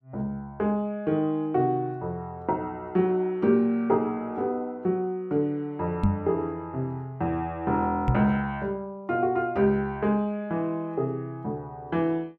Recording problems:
knock on the microphone; at 6 s and at 8 s; peak +8 dB vs average level

